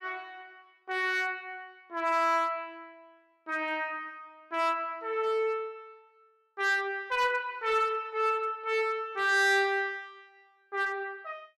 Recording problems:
distorted audio; hard clipping, uneven, signal-to-distortion ratio 11 dB

